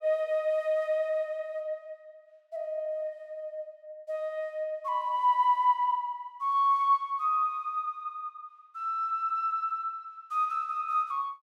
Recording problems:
none

